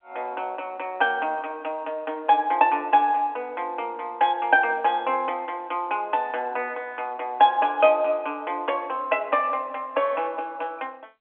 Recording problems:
phone line; 240 Hz to 3.4 kHz, G.711

